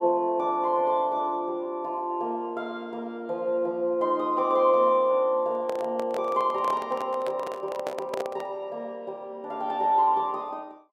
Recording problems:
handling noise; from 5.5 to 8.5 s; peak -1 dB vs average level

